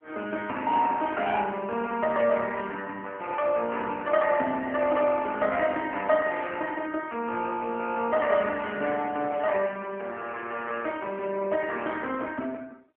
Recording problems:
telephone audio; 220 Hz to 3.1 kHz, AMR-NB

